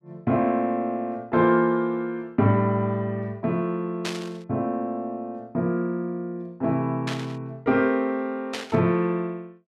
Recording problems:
static burst; at 4 s, at 7 s and at 8.5 s; peak -2 dB vs average level

